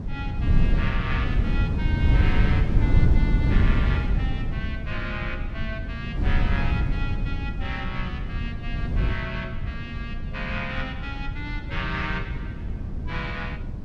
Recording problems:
wind noise; below 120 Hz, SNR -6 dB

